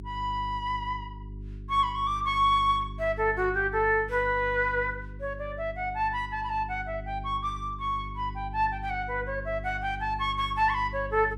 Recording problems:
hum; 50 Hz, harmonics up to 400 Hz, SNR 12 dB

